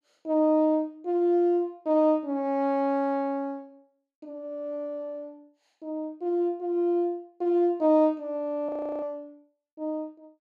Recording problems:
frozen audio; at 8.5 s

